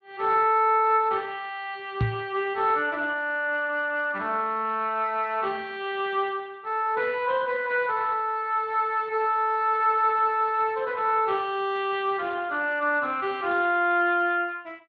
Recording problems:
lossy compression; Speex, log-spectral distance 3 dB
microphone thump; at 2 s; peak +3 dB vs average level

